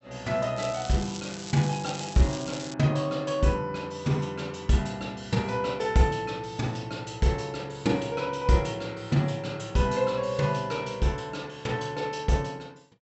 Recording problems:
treble missing; nothing above 8 kHz
crackling; from 0.5 to 2.5 s; loose cable, SNR 12 dB

